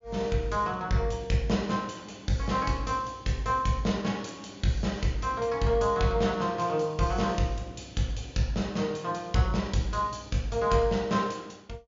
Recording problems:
treble cut off; nothing above 7.2 kHz

